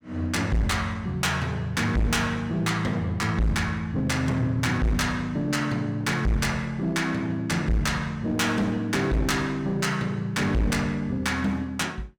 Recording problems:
distorted audio; hard clipping, uneven, signal-to-distortion ratio 7 dB

